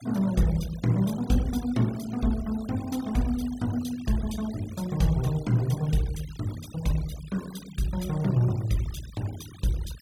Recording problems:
noise reduction artefacts; signal-to-artefact ratio 18 dB

